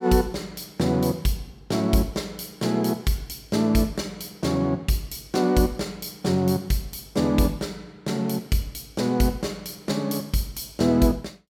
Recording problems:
none

